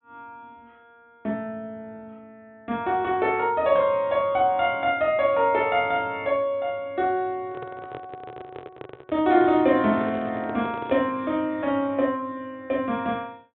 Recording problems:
low-pass filter; nothing above 3.8 kHz
microphone handling noise; from 7.5 to 11 s; peak -8 dB vs average level

